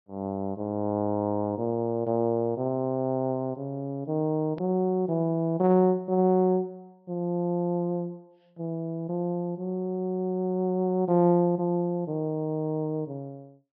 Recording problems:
low-pass filter; nothing above 5.5 kHz
hard cut with a click; at 4.5 s

